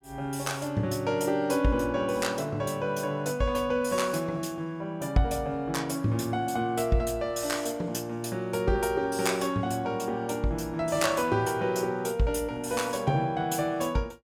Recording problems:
none

